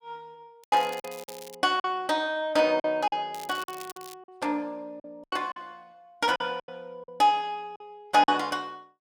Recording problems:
lost packets; 9% of the sound replaced, filled with silence
crackle; at 0.5 s and at 3.5 s; loose cable, SNR 19 dB

